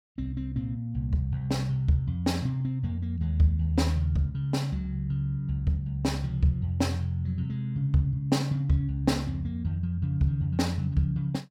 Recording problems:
none

